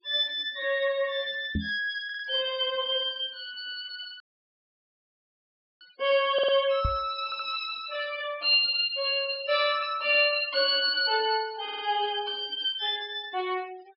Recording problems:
treble cut off; nothing above 5.5 kHz
denoising artefacts; signal-to-artefact ratio 22 dB
knock on the microphone; at 1.5 s and at 7 s; peak +1 dB vs average level
audio stuttering; 4 times, first at 2 s
dropout; at 4 s for 1.5 s

